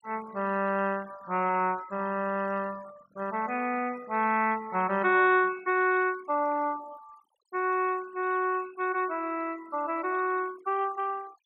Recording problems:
noise reduction artefacts; signal-to-artefact ratio 22 dB

